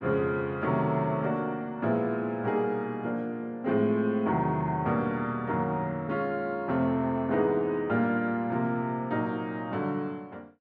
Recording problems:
none

